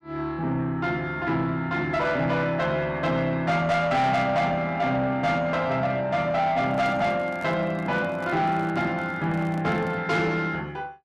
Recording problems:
distorted audio; soft clipping, signal-to-distortion ratio 11 dB
handling noise; from 6.5 to 10 s; peak -10 dB vs average level

